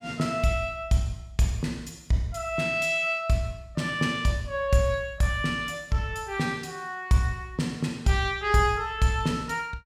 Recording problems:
none

